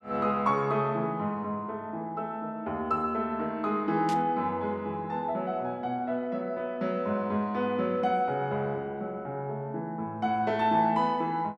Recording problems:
static burst; at 4 s; peak -7 dB vs average level

